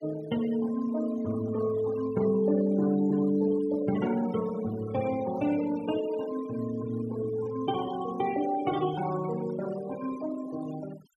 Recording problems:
denoising artefacts; signal-to-artefact ratio 17 dB

